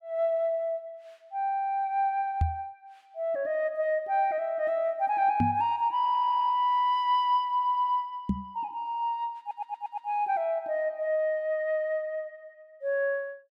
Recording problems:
microphone bump; at 2.5 s, at 5.5 s and at 8.5 s; peak +5 dB vs average level
stutter; at 6 s, at 7.5 s and at 9.5 s

